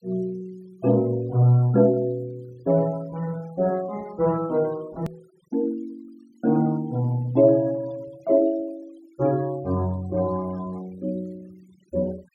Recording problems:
denoising artefacts; signal-to-artefact ratio 26 dB
edit click; at 5 s

